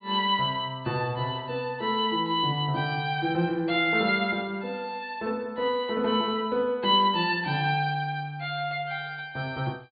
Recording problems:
treble cut off; nothing above 4.7 kHz

